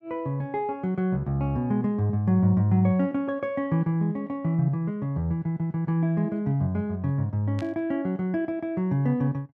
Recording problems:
burst of static; at 7.5 s; peak -13 dB vs average level

